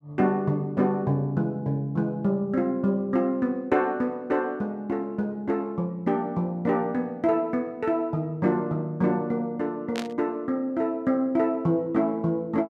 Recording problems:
static burst; at 10 s; peak -3 dB vs average level

